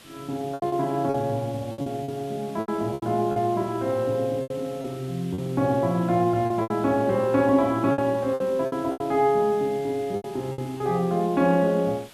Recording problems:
hiss; SNR 22 dB
lost packets; 10% of the sound replaced, filled with repeated pitch periods

